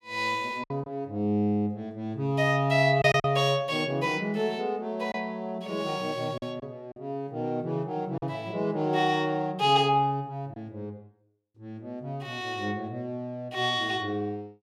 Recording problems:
lost packets; 2% of the sound replaced, filled with silence

